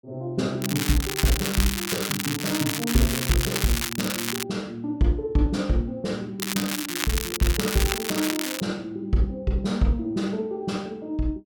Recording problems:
crackling; from 0.5 to 4.5 s and from 6.5 to 8.5 s; loose cable, SNR 1 dB

